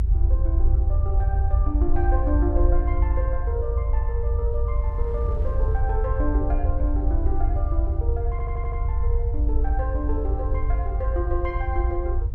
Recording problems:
hum; 60 Hz, harmonics up to 1 kHz, SNR 23 dB
low-frequency rumble; below 74 Hz, SNR -7 dB
wind noise; below 320 Hz, SNR 18 dB
audio stuttering; at 8.5 s

